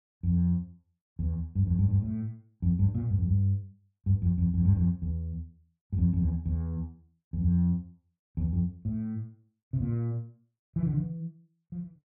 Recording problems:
none

